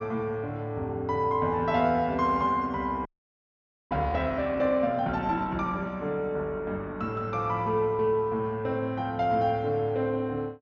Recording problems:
treble missing; nothing above 6.9 kHz
audio freezing; at 3 s for 1 s

